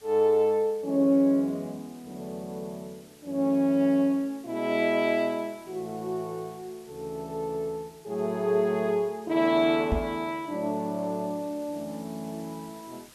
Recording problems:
background hiss; slope -1 dB per octave, SNR 26 dB
microphone thump; at 10 s; peak +3 dB vs average level

